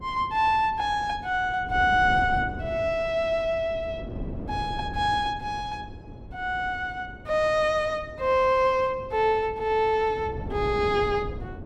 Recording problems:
wind on the microphone; below 290 Hz, SNR 13 dB

